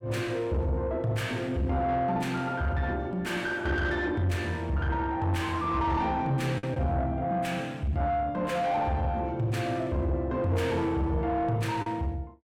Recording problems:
distorted audio; soft clipping, signal-to-distortion ratio 10 dB
lost packets; 0.9% of the sound replaced, filled with the last packet

